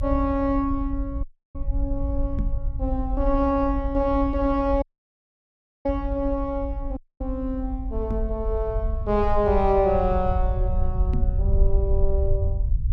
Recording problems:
low-frequency rumble; below 64 Hz, SNR 3 dB
dropout; at 1 s, at 5 s for 1 s and at 7 s
knock on the microphone; at 2.5 s, at 8 s and at 11 s; peak 0 dB vs average level

